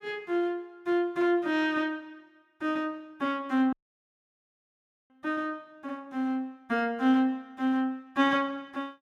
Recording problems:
dropout; at 3.5 s for 1.5 s

